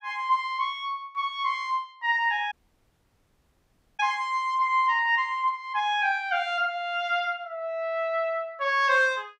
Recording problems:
audio cutting out; at 2.5 s for 1.5 s

